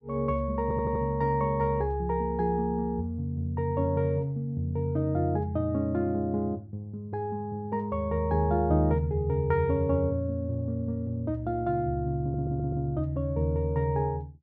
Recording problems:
audio stuttering; at 0.5 s and at 12 s

